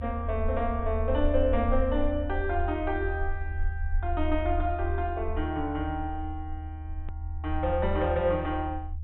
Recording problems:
treble cut off; nothing above 3.6 kHz
low-frequency rumble; below 78 Hz, SNR 4 dB
edit click; at 7 s

